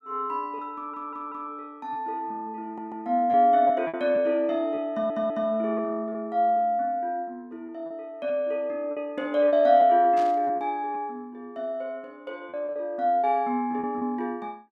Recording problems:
packet loss; 5% of the sound replaced, filled with repeated pitch periods
stutter; at 1 s, at 2.5 s and at 5 s
burst of static; at 10 s; peak -14 dB vs average level

